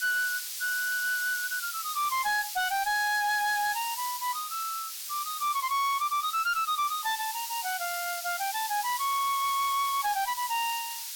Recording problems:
distortion; hard clipping, uneven, signal-to-distortion ratio 11 dB
background hiss; slope +6 dB per octave, SNR 6 dB

